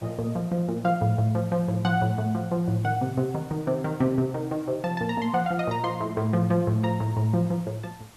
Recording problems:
background hiss; slope -3 dB per octave, SNR 24 dB

